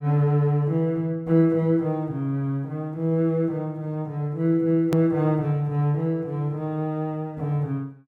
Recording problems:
hard cut with a click; at 5 s

